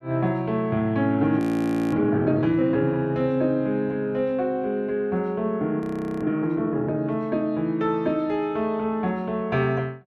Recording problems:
audio freezing; at 1.5 s for 0.5 s and at 6 s

